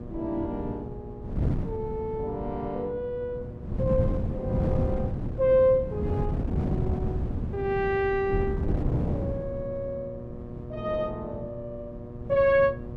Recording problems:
hum; 60 Hz, harmonics up to 1.2 kHz, SNR 15 dB
wind noise; below 210 Hz, SNR 3 dB

